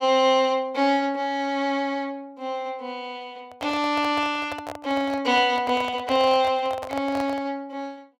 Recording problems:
handling noise; from 3.5 to 7.5 s; peak -6 dB vs average level

